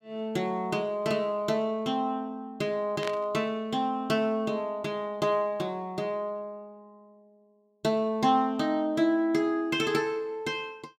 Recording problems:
static burst; at 3 s; peak -3 dB vs average level

